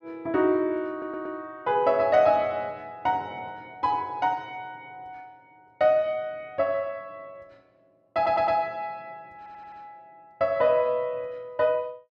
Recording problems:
stutter; at 1 s, at 8 s and at 9.5 s

